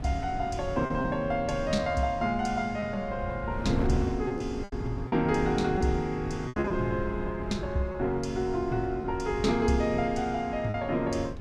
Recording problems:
wind noise; below 170 Hz, SNR 9 dB
packet loss; 5% of the sound replaced, filled with repeated pitch periods

